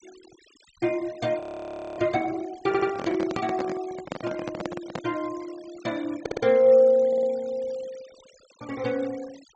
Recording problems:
low-pass filter; nothing above 8 kHz
denoising artefacts; signal-to-artefact ratio 22 dB
frozen audio; at 1.5 s for 0.5 s
audio stuttering; at 2.5 s, at 6 s and at 7 s
handling noise; from 2.5 to 5 s; peak -3 dB vs average level

